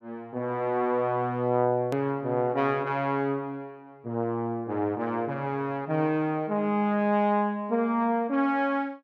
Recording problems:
click at an edit; at 2 s

